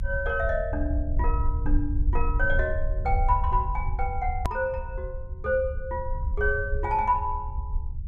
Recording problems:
rumble; below 70 Hz, SNR 2 dB
click at an edit; at 4.5 s

